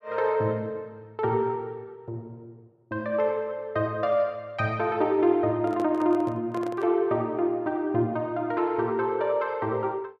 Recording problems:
handling noise; from 5.5 to 7 s; peak -7 dB vs average level

